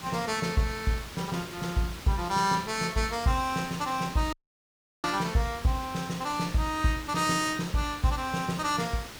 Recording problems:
hiss; slope -2 dB per octave, SNR 13 dB
audio cutting out; at 4.5 s for 0.5 s

